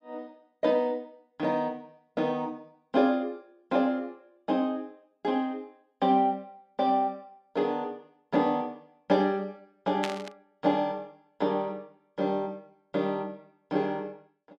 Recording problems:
static burst; at 10 s; peak +1 dB vs average level

